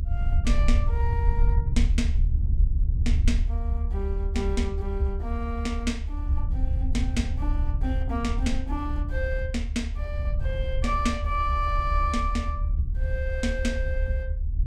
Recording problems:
rumble; below 74 Hz, SNR -3 dB

